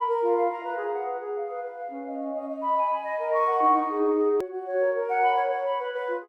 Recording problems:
click at an edit; at 4.5 s

